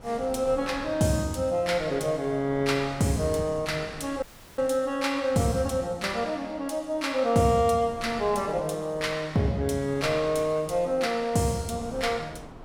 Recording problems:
wind on the microphone; below 690 Hz, SNR 19 dB
dropout; at 4 s

